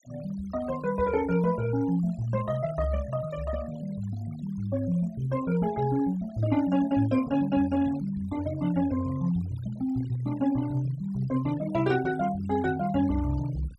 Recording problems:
denoising artefacts; signal-to-artefact ratio 19 dB

